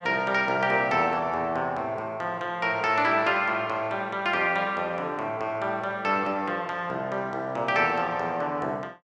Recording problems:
none

